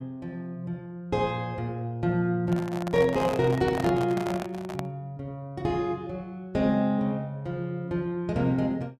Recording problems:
microphone handling noise; from 2.5 to 5 s; peak 0 dB vs average level

